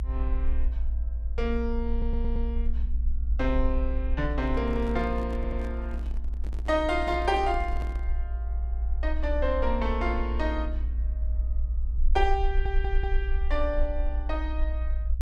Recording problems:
low-frequency rumble; below 58 Hz, SNR 0 dB
stutter; at 2 s, at 5.5 s and at 12 s
microphone handling noise; from 4.5 to 8 s; peak -6 dB vs average level

